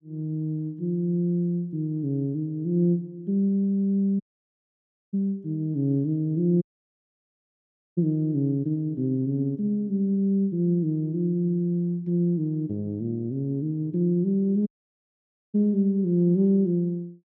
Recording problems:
dropout; at 4 s for 1 s, at 6.5 s for 1.5 s and at 15 s for 1 s

